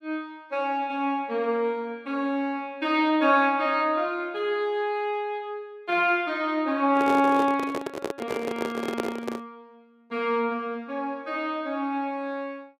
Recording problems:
microphone handling noise; from 7 to 9.5 s; peak +2 dB vs average level

